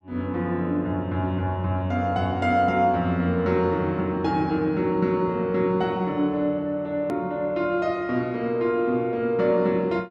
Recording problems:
hard cut with a click; at 7 s

